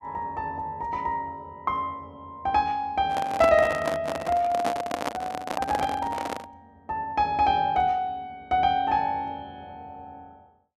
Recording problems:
microphone handling noise; from 3 to 6.5 s; peak +2 dB vs average level

